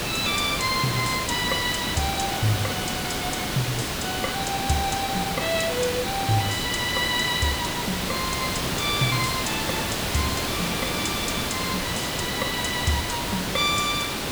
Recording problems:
background hiss; slope -3 dB per octave, SNR 0 dB

